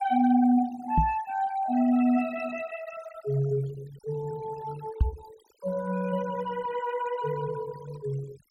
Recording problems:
denoising artefacts; signal-to-artefact ratio 19 dB
knock on the microphone; at 1 s and at 5 s; peak +8 dB vs average level

